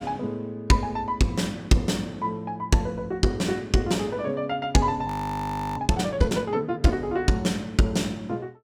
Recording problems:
frozen audio; at 5 s for 0.5 s

